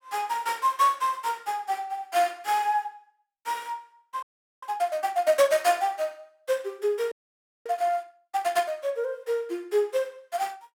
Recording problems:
audio freezing; at 4 s and at 7 s for 0.5 s

